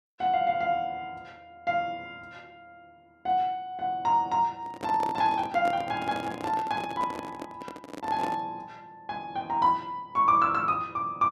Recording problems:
microphone handling noise; from 4.5 to 8.5 s; peak -3 dB vs average level

